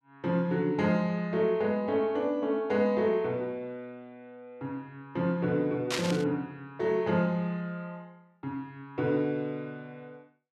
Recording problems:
burst of static; at 6 s; peak +3 dB vs average level

